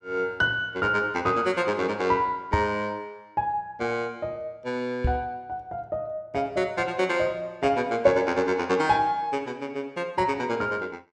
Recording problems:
microphone bump; at 2.5 s and at 5 s; peak +4 dB vs average level

